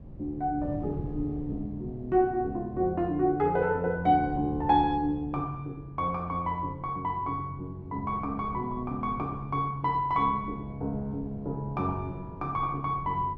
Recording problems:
wind on the microphone; below 210 Hz, SNR 14 dB

